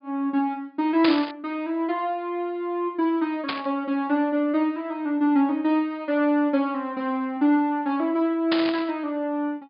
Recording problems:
low-pass filter; nothing above 5.1 kHz
static burst; at 1 s, at 3.5 s and at 8.5 s; peak +2 dB vs average level

